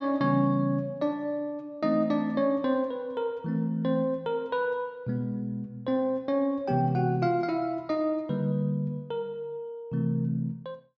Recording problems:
treble missing; nothing above 8 kHz

